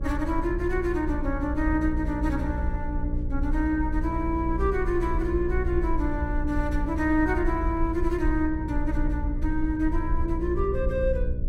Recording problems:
electrical hum; 60 Hz, harmonics up to 600 Hz, SNR 7 dB
low-frequency rumble; below 60 Hz, SNR 4 dB

